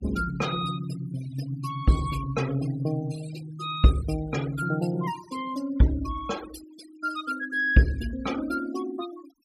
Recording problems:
noise reduction artefacts; signal-to-artefact ratio 16 dB

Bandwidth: 15 kHz